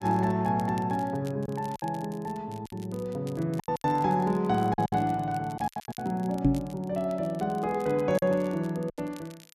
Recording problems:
crackling; vinyl, SNR 24 dB
lost packets; 8% of the sound replaced, filled with silence
knock on the microphone; at 6.5 s; peak +9 dB vs average level

